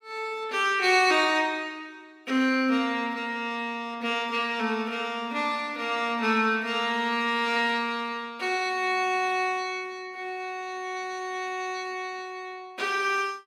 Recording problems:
none

